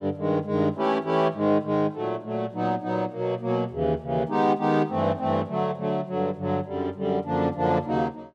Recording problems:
none

